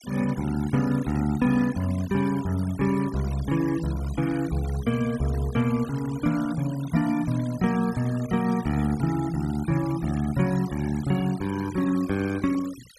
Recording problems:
noise reduction artefacts; signal-to-artefact ratio 18 dB

